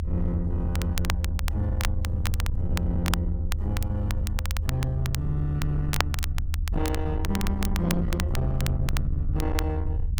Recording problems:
distorted audio; soft clipping, signal-to-distortion ratio 10 dB
rumble; below 80 Hz, SNR 0 dB
crackle; vinyl, SNR 7 dB

